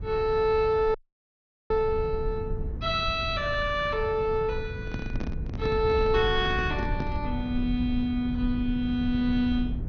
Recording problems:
codec artefacts; MP2, then MP2, log-spectral distance 2 dB, nothing above 6.3 kHz
rumble; below 120 Hz, SNR 8 dB
dropout; at 1 s for 1 s
microphone handling noise; from 5 to 7 s; peak -2 dB vs average level

